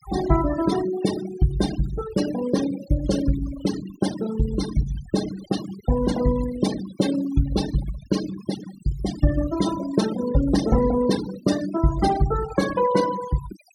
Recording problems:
noise reduction artefacts; signal-to-artefact ratio 11 dB

